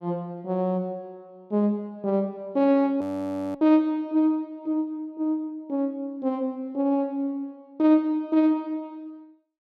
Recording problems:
audio freezing; at 3 s for 0.5 s

